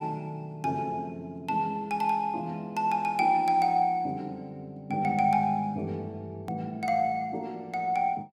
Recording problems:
click at an edit; at 6.5 s

